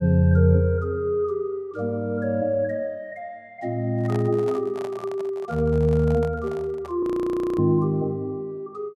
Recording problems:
microphone handling noise; from 4 to 7 s; peak -8 dB vs average level
audio freezing; at 7 s for 0.5 s

